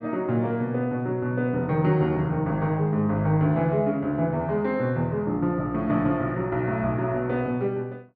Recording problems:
none

